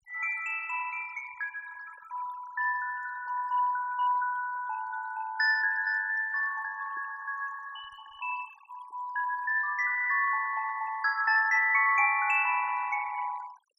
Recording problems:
denoising artefacts; signal-to-artefact ratio 16 dB

